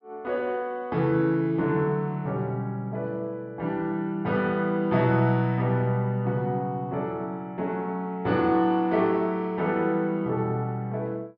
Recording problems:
treble missing; nothing above 5.5 kHz

